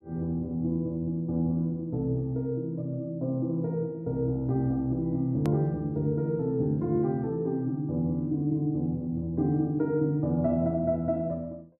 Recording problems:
hard cut with a click; at 5.5 s

